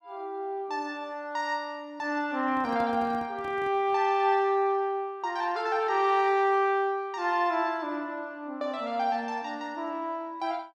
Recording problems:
handling noise; from 2.5 to 4 s; peak -11 dB vs average level

